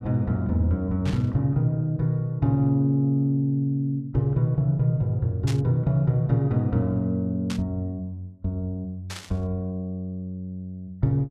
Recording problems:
burst of static; 4 times, first at 1 s; peak -6 dB vs average level

